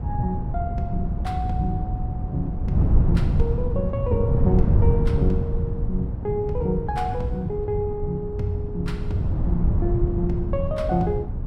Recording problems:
wind noise; below 130 Hz, SNR -2 dB

